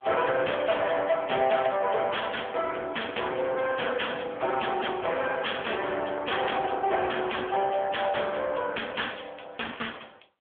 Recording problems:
phone line; 300 Hz to 3.4 kHz, AMR-NB
distorted audio; hard clipping, uneven, signal-to-distortion ratio 7 dB

